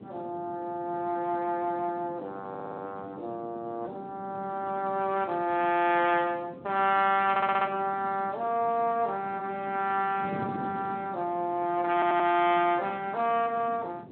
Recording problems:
telephone audio; 220 Hz to 3.5 kHz, Speex
wind noise; below 390 Hz, SNR 16 dB
stutter; at 2.5 s, at 7.5 s and at 12 s

